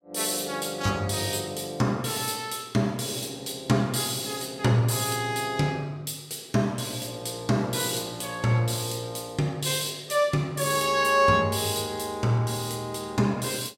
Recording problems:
none

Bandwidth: 16 kHz